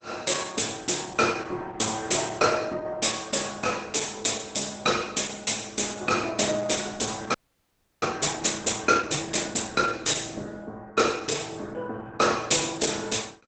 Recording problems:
lossy codec; Opus, log-spectral distance 10 dB, nothing above 8 kHz
audio freezing; at 7.5 s for 0.5 s

